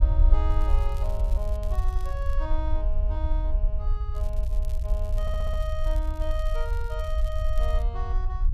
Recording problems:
rumble; below 58 Hz, SNR -9 dB
crackling; until 2.5 s and from 4 to 8 s; loose cable, SNR 17 dB
stutter; at 5 s

